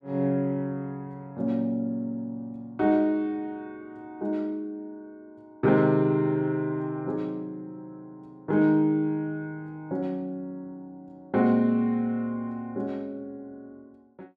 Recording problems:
none

